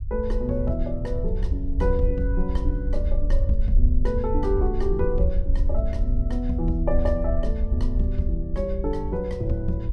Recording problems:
rumble; below 60 Hz, SNR -1 dB

